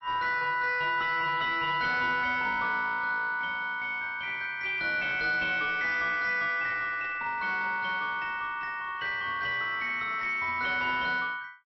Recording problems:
lossy compression; MP3, log-spectral distance 2 dB, nothing above 5.3 kHz
distortion; soft clipping, signal-to-distortion ratio 10 dB

